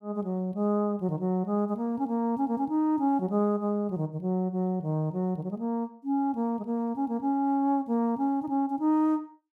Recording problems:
none

